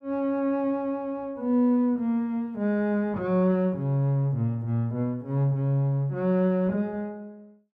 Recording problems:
none

